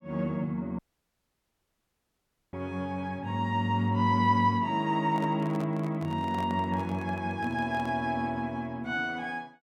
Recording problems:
dropout; at 1 s for 1.5 s
microphone handling noise; from 5 to 8 s; peak -8 dB vs average level

